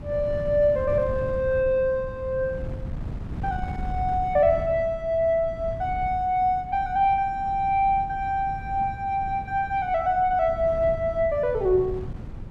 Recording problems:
wind on the microphone; below 150 Hz, SNR 12 dB

